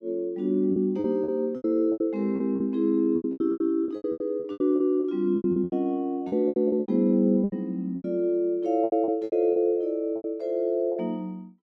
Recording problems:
lost packets; 17% of the sound replaced, filled with repeated pitch periods

